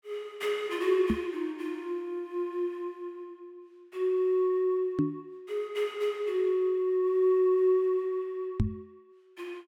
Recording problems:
microphone thump; at 1 s, at 5 s and at 8.5 s; peak +6 dB vs average level

